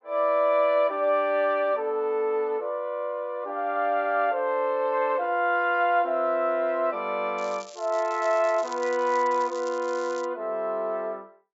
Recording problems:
low-pass filter; nothing above 8 kHz
crackle; from 7.5 to 10 s; loose cable, SNR 21 dB

